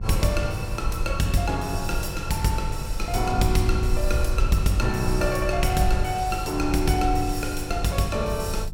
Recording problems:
hum; 50 Hz, harmonics up to 400 Hz, SNR 13 dB
low-frequency rumble; below 62 Hz, SNR 6 dB

